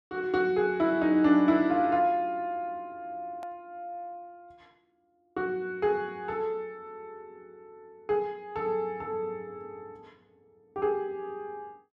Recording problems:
click at an edit; at 3.5 s

